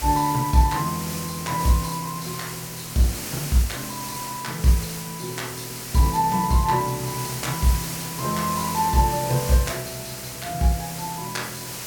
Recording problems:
hiss; slope -1 dB per octave, SNR 7 dB

